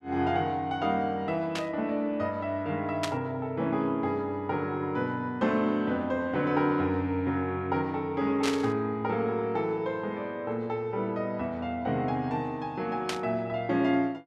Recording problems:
burst of static; 4 times, first at 1.5 s; peak +1 dB vs average level

